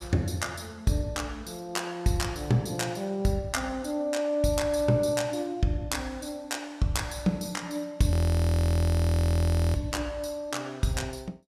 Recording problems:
frozen audio; at 8 s for 1.5 s

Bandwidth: 14.5 kHz